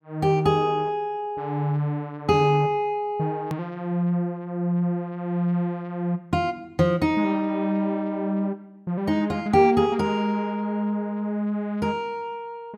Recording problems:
click at an edit; at 3.5 s

